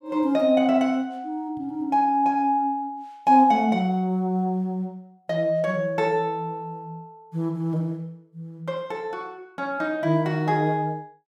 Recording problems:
none

